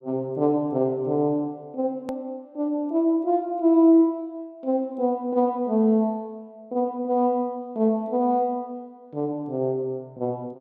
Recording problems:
click at an edit; at 2 s

